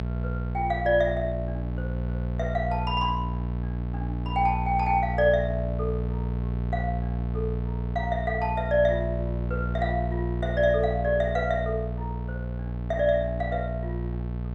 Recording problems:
hum; 60 Hz, harmonics up to 900 Hz, SNR 3 dB

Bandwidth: 13 kHz